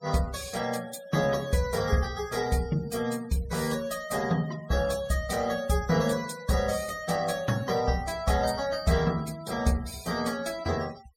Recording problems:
noise reduction artefacts; signal-to-artefact ratio 19 dB

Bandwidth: 17 kHz